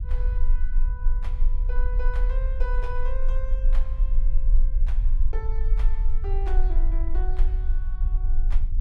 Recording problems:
low-frequency rumble; below 38 Hz, strongest tone 20 Hz, SNR -14 dB

